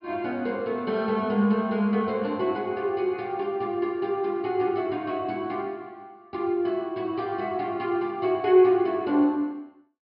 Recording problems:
treble cut off; nothing above 5.5 kHz

